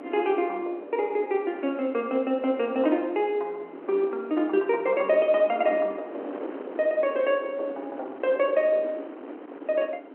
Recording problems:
telephone audio; 240 Hz to 3.7 kHz, G.711
wind on the microphone; below 590 Hz, SNR 15 dB

